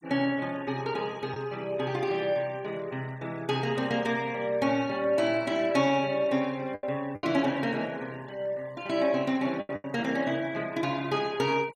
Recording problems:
noise reduction artefacts; signal-to-artefact ratio 23 dB
lost packets; 3% of the sound replaced, filled with the last packet

